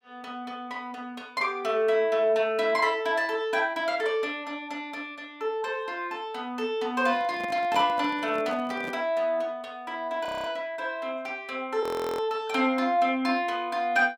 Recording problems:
handling noise; from 7 to 9 s; peak -7 dB vs average level
audio freezing; at 10 s and at 12 s

